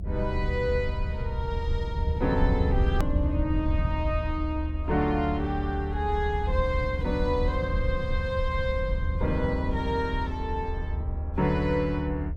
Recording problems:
hum; 60 Hz, harmonics up to 720 Hz, SNR 20 dB
low-frequency rumble; below 80 Hz, SNR 1 dB
click at an edit; at 3 s

